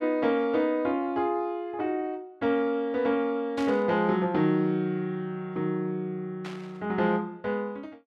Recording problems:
burst of static; at 3.5 s and at 6.5 s; peak -9 dB vs average level

